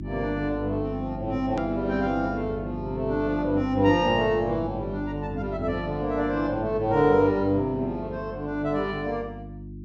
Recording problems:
treble missing; nothing above 8 kHz
hum; 50 Hz, harmonics up to 350 Hz, SNR 10 dB
edit click; at 1.5 s

